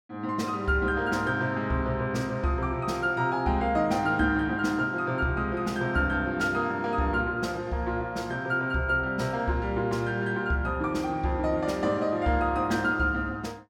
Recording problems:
none

